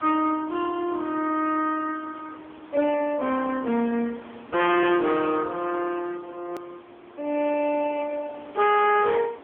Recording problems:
telephone audio; 190 Hz to 3.3 kHz, AMR-NB
distortion; hard clipping, signal-to-distortion ratio 11 dB
background hiss; SNR 22 dB
hard cut with a click; at 6.5 s

